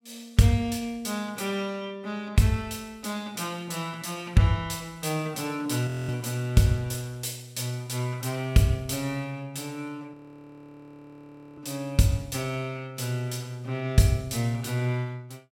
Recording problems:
frozen audio; at 6 s and at 10 s for 1.5 s

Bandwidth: 16.5 kHz